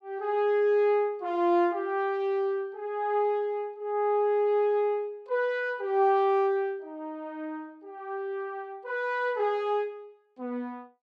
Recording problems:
none

